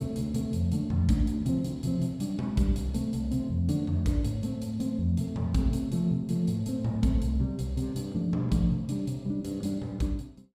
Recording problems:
none

